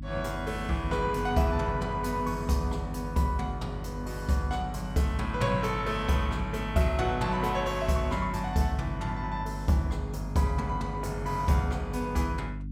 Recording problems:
hum; 50 Hz, harmonics up to 300 Hz, SNR 8 dB

